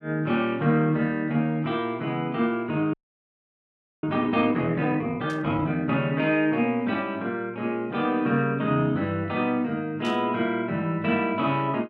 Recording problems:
audio freezing; at 3 s for 1 s
static burst; at 5.5 s and at 10 s; peak -10 dB vs average level

